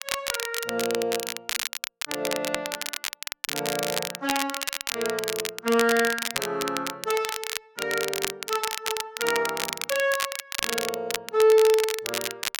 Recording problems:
crackling; vinyl, SNR 3 dB

